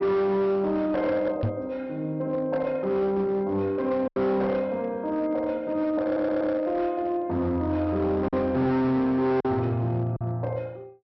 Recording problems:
treble cut off; nothing above 5.6 kHz
distorted audio; hard clipping, signal-to-distortion ratio 11 dB
packet loss; 1.9% of the sound replaced, filled with silence
microphone thump; at 1.5 s; peak +3 dB vs average level
audio stuttering; at 6 s

